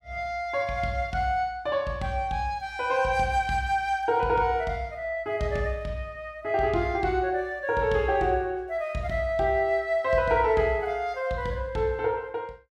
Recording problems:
none

